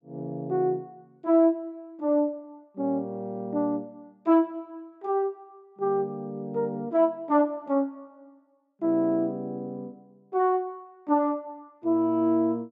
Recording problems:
none

